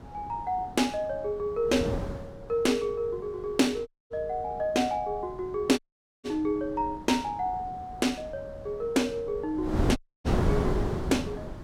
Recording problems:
wind noise; below 380 Hz, SNR 5 dB
dropout; at 4 s, at 6 s and at 10 s

